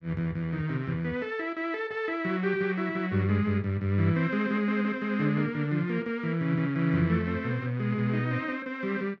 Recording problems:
none

